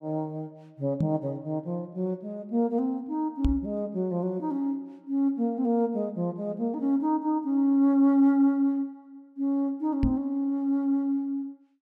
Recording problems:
microphone thump; at 1 s, at 3.5 s and at 10 s; peak +4 dB vs average level

